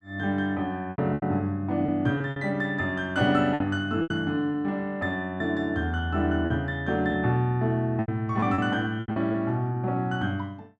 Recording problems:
packet loss; 8% of the sound replaced, filled with repeated pitch periods

